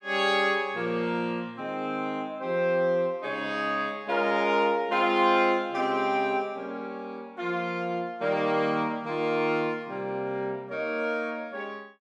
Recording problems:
none

